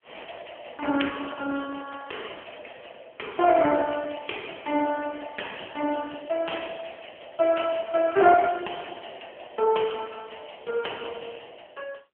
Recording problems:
telephone audio; 260 Hz to 3.2 kHz, AMR-NB

